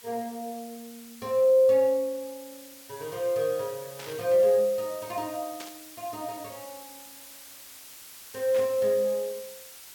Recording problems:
hiss; slope +2 dB per octave, SNR 18 dB
static burst; at 4 s, at 5.5 s and at 8.5 s; peak -10 dB vs average level

